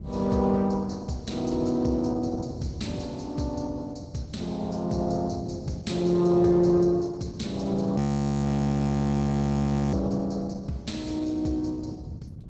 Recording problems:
codec artefacts; Opus, log-spectral distance 3 dB, nothing above 7.8 kHz
wind on the microphone; below 180 Hz, SNR 13 dB
frozen audio; at 8 s for 2 s

